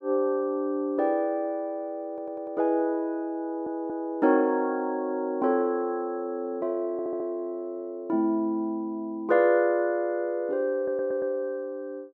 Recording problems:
stutter; 4 times, first at 2 s

